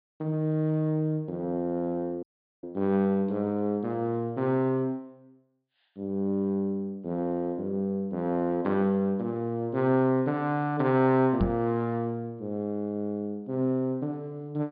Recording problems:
low-pass filter; nothing above 4.9 kHz
dropout; at 2 s
microphone thump; at 11 s; peak +6 dB vs average level

